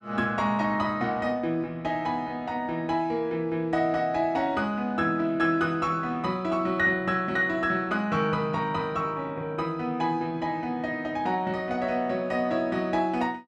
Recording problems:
none

